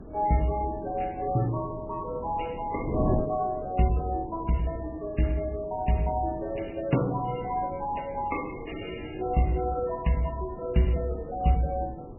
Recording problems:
lossy compression; MP3, log-spectral distance 5 dB, nothing above 2.8 kHz
wind on the microphone; below 380 Hz, SNR 10 dB

